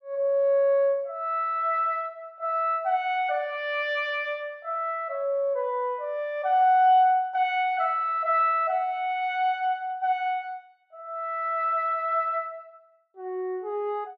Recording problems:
none

